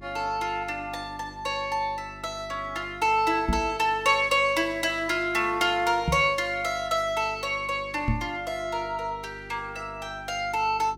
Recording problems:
hum; 50 Hz, harmonics up to 400 Hz, SNR 21 dB
knock on the microphone; at 3.5 s, at 6 s and at 8 s; peak +4 dB vs average level

